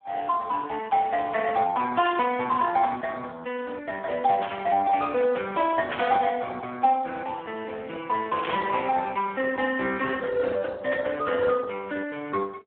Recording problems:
telephone audio; 300 Hz to 2.2 kHz, Speex
static burst; 5 times, first at 2 s; peak -3 dB vs average level

